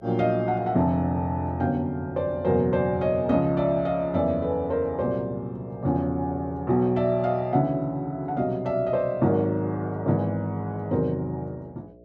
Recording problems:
hum; 60 Hz, harmonics up to 660 Hz, SNR 28 dB

